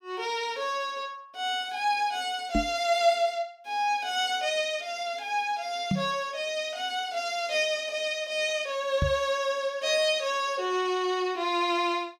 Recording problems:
knock on the microphone; at 2.5 s, at 6 s and at 9 s; peak +4 dB vs average level

